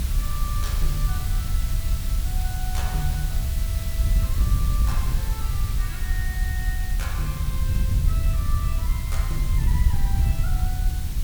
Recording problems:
hiss; slope +1 dB per octave, SNR 0 dB
rumble; below 54 Hz, strongest tone 36 Hz, SNR -5 dB
wind on the microphone; below 88 Hz, SNR -10 dB

